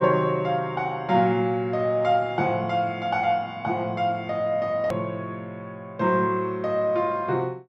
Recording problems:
edit click; at 5 s

